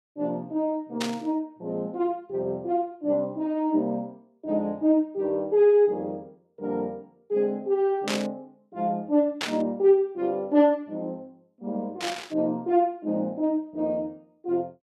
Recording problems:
static burst; 4 times, first at 1 s; peak +1 dB vs average level

